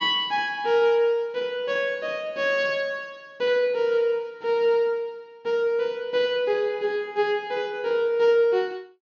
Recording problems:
treble missing; nothing above 7 kHz

